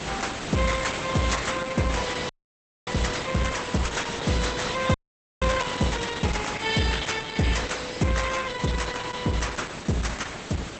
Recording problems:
codec artefacts; Opus, log-spectral distance 10 dB, nothing above 8 kHz
background hiss; slope -4 dB per octave, SNR 7 dB
audio freezing; at 2.5 s for 0.5 s and at 5 s

